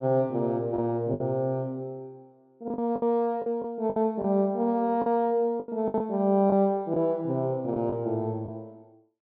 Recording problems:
packet loss; 8% of the sound replaced, filled with the last packet

